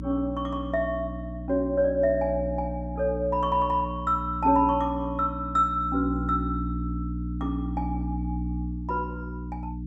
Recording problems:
electrical hum; 60 Hz, harmonics up to 300 Hz, SNR 7 dB

